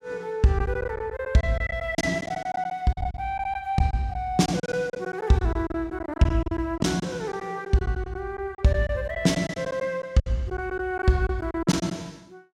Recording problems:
lost packets; 13% of the sound replaced, filled with silence

